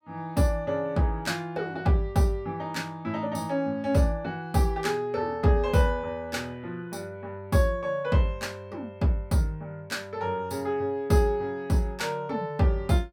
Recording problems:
none

